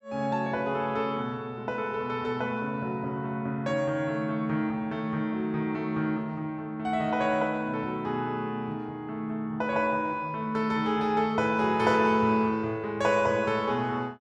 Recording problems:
none

